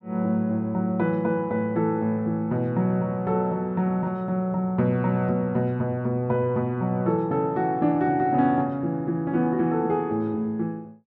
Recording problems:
none

